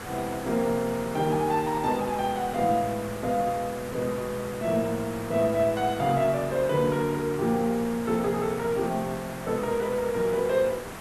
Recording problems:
hiss; SNR 12 dB

